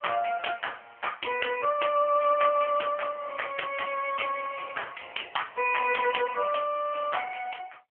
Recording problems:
phone line; 370 Hz to 3.1 kHz, AMR-NB

